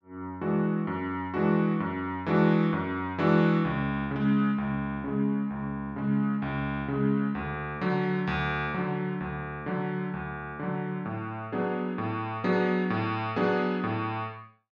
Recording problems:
none

